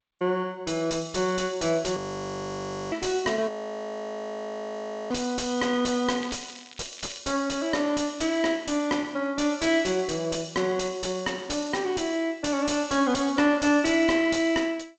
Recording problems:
lossy codec; G.722, log-spectral distance 5 dB, nothing above 7.3 kHz
distorted audio; soft clipping, signal-to-distortion ratio 10 dB
audio freezing; at 2 s for 1 s and at 3.5 s for 1.5 s
crackle; from 6 to 7 s; loose cable, SNR 20 dB

